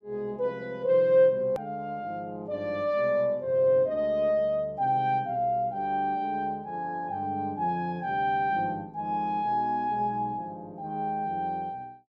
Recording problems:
hard cut with a click; at 1.5 s

